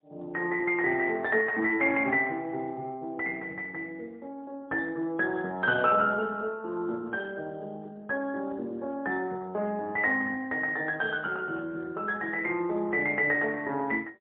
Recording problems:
telephone audio; 220 Hz to 3.6 kHz, AMR-NB, then MP3

